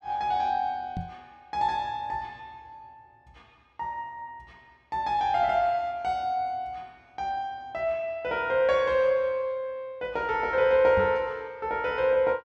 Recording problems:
microphone bump; at 1 s and at 11 s; peak -3 dB vs average level

